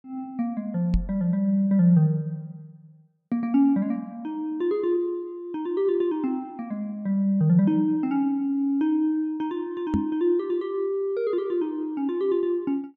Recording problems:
microphone thump; at 1 s and at 10 s; peak +4 dB vs average level

